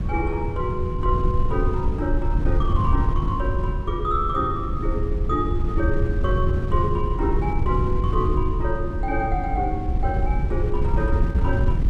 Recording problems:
wind noise; below 96 Hz, SNR -2 dB

